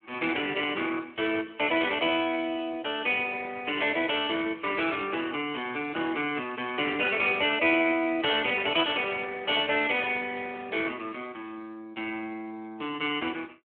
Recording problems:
phone line; 260 Hz to 3.5 kHz, Speex

